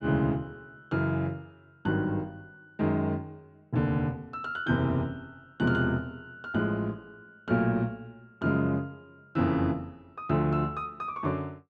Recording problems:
none

